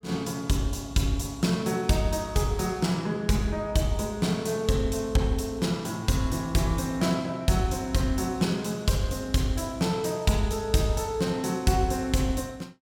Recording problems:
none

